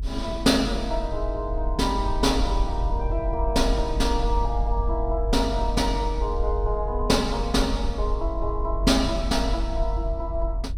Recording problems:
rumble; below 48 Hz, strongest tone 46 Hz, SNR 3 dB

